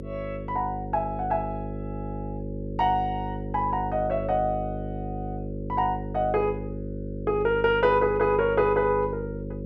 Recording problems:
hum; 50 Hz, harmonics up to 550 Hz, SNR 8 dB

